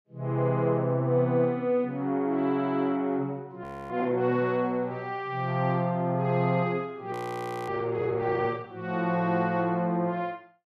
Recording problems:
audio freezing; at 3.5 s and at 7 s for 0.5 s

